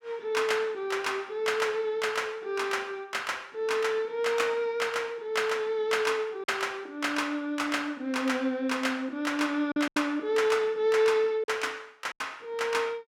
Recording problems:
packet loss; 2% of the sound replaced, filled with silence

